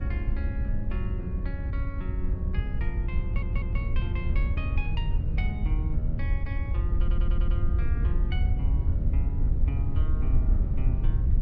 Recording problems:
wind noise; below 78 Hz, SNR -11 dB
audio stuttering; at 3 s and at 7 s

